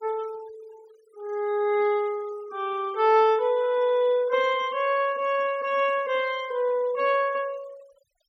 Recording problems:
noise reduction artefacts; signal-to-artefact ratio 24 dB

